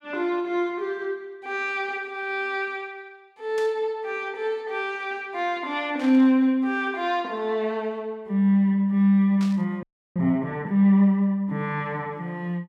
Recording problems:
burst of static; at 3.5 s, at 6 s and at 9.5 s; peak -11 dB vs average level
frozen audio; at 10 s

